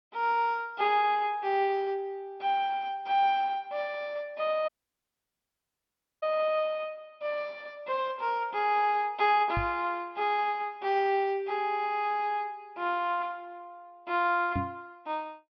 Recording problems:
treble cut off; nothing above 5.5 kHz
dropout; at 4.5 s for 1.5 s
knock on the microphone; at 9.5 s and at 15 s; peak 0 dB vs average level

